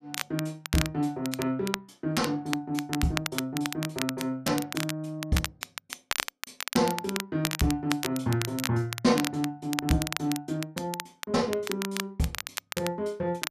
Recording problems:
crackle; vinyl, SNR 5 dB

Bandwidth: 14.5 kHz